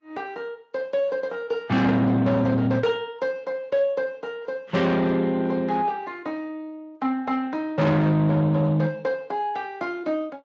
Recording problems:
lossy codec; Vorbis, then Speex, log-spectral distance 2 dB
distorted audio; soft clipping, signal-to-distortion ratio 8 dB

